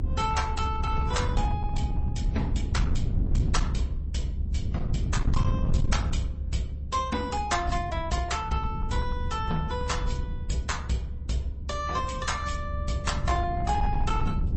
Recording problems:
lossy compression; AAC, then MP3, log-spectral distance 2 dB, nothing above 8.2 kHz
distorted audio; hard clipping, uneven, signal-to-distortion ratio 11 dB
low-frequency rumble; below 110 Hz, SNR 0 dB

